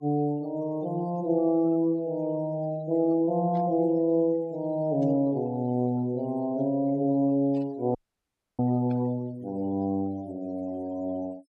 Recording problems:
denoising artefacts; signal-to-artefact ratio 27 dB
burst of static; 4 times, first at 3.5 s; peak -21 dB vs average level
dropout; at 8 s for 0.5 s

